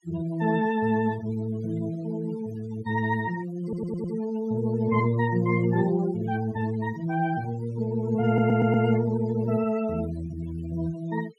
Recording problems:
noise reduction artefacts; signal-to-artefact ratio 18 dB
audio stuttering; at 3.5 s and at 8.5 s

